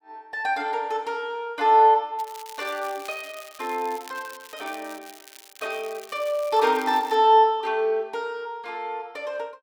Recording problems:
crackle; from 2 to 7 s; loose cable, SNR 21 dB

